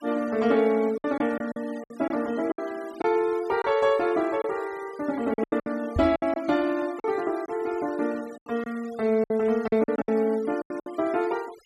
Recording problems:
denoising artefacts; signal-to-artefact ratio 22 dB
packet loss; 10% of the sound replaced, filled with silence
microphone bump; at 6 s; peak 0 dB vs average level

